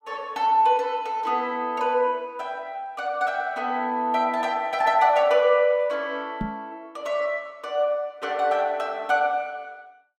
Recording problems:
microphone bump; at 6.5 s; peak -2 dB vs average level

